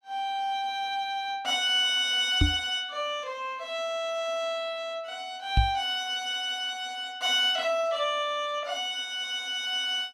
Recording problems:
microphone thump; at 2.5 s and at 5.5 s; peak +7 dB vs average level

